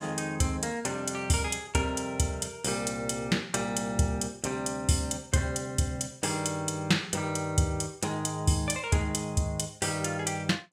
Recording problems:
none

